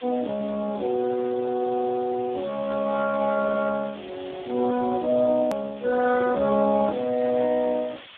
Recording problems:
phone line; 170 Hz to 2 kHz, Speex
background hiss; SNR 20 dB
edit click; at 5.5 s

